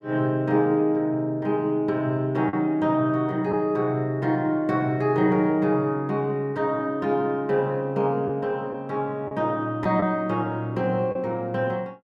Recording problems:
lost packets; 1.3% of the sound replaced, filled with the last packet

